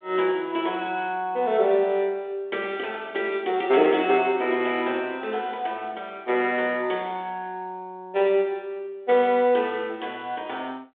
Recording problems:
telephone audio; 280 Hz to 3.6 kHz, G.726

